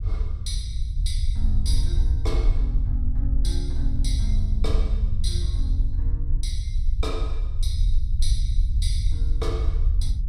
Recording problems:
rumble; below 64 Hz, SNR -10 dB

